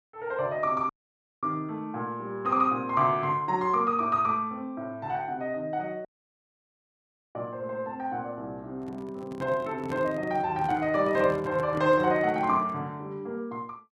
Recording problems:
audio cutting out; at 1 s for 0.5 s and at 6 s for 1.5 s
handling noise; from 9 to 13 s; peak -6 dB vs average level

